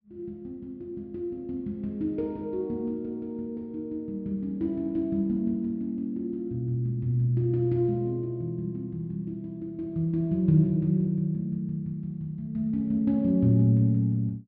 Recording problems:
treble cut off; nothing above 5.5 kHz

